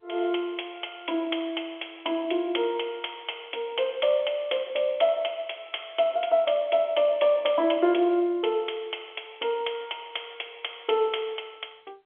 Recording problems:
telephone audio; 260 Hz to 3.4 kHz, G.711

